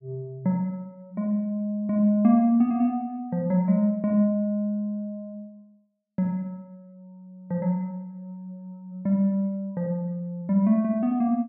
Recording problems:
none

